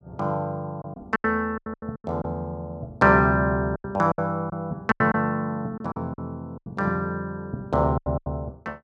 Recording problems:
packet loss; 11% of the sound replaced, filled with silence

